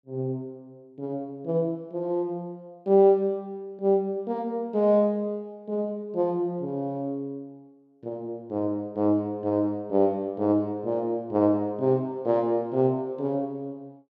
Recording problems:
none

